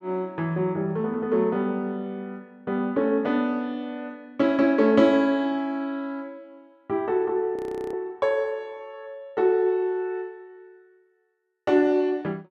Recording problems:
audio freezing; at 7.5 s

